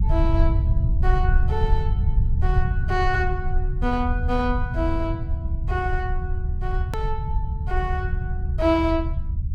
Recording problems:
rumble; below 78 Hz, SNR -2 dB
click at an edit; at 7 s

